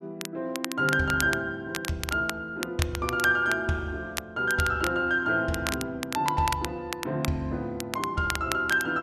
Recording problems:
crackle; vinyl, SNR 9 dB

